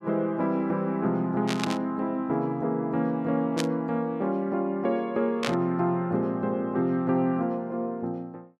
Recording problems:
burst of static; at 1.5 s, at 3.5 s and at 5.5 s; peak +1 dB vs average level

